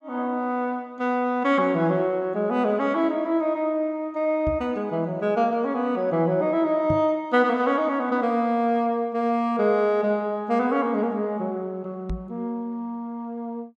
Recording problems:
microphone thump; at 4.5 s, at 7 s and at 12 s; peak -1 dB vs average level

